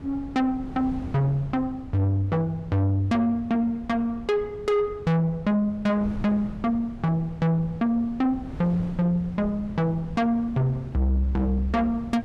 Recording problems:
distorted audio; soft clipping, signal-to-distortion ratio 6 dB
wind on the microphone; below 220 Hz, SNR 15 dB

